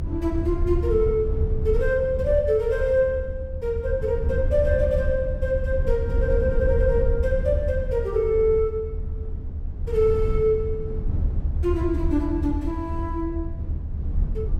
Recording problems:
rumble; below 80 Hz, SNR 4 dB

